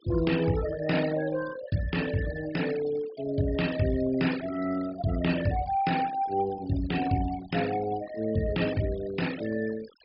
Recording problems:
treble cut off; nothing above 5.5 kHz
denoising artefacts; signal-to-artefact ratio 14 dB

